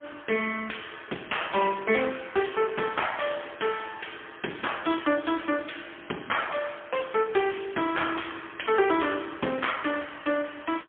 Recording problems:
telephone audio; 190 Hz to 3.3 kHz, AMR-NB, then MP3
distorted audio; soft clipping, signal-to-distortion ratio 12 dB

